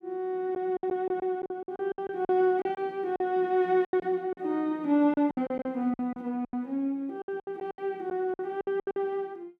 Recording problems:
packet loss; 14% of the sound replaced, filled with silence

